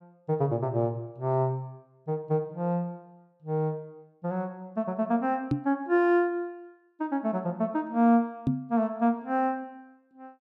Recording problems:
knock on the microphone; at 5.5 s and at 8.5 s; peak +5 dB vs average level

